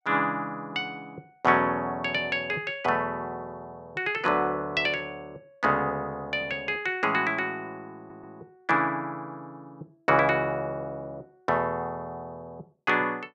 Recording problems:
audio stuttering; at 8 s

